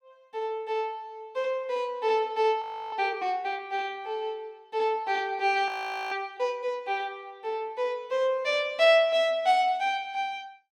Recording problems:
audio freezing; at 2.5 s and at 5.5 s

